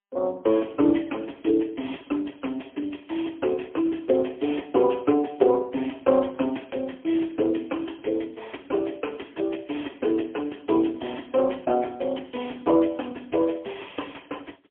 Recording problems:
telephone audio; 240 Hz to 3.3 kHz, AMR-NB, then MP3

